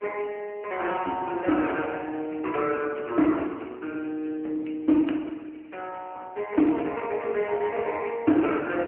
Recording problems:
telephone audio; 220 Hz to 3.1 kHz, AMR-NB

